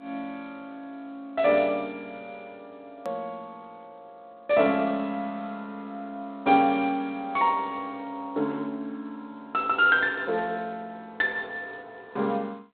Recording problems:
phone line; 240 Hz to 3.6 kHz, G.726
edit click; at 3 s

